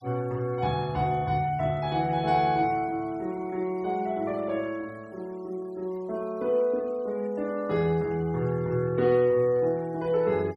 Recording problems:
denoising artefacts; signal-to-artefact ratio 27 dB

